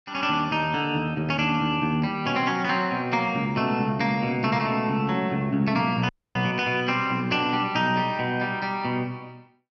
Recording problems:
dropout; at 6 s

